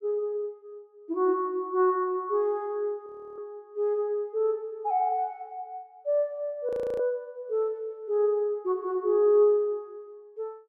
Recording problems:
frozen audio; at 3 s and at 6.5 s

